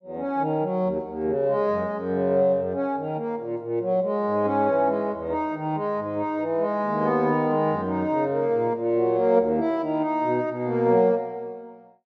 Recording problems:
none

